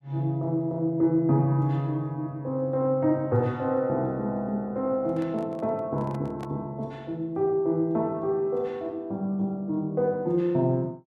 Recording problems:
handling noise; from 5 to 6.5 s; peak -10 dB vs average level

